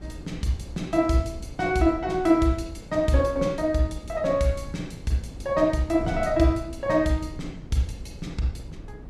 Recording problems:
wind noise; below 210 Hz, SNR 16 dB

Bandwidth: 14 kHz